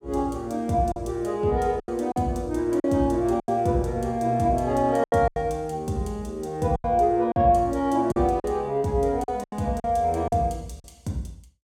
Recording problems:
packet loss; 8% of the sound replaced, filled with silence

